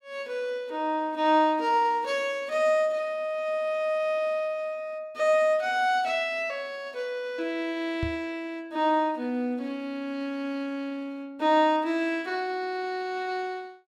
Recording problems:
microphone thump; at 8 s; peak -1 dB vs average level

